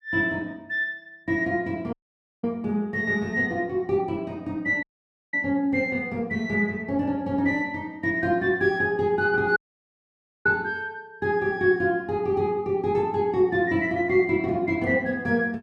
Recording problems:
dropout; at 2 s for 0.5 s, at 5 s for 0.5 s and at 9.5 s for 1 s

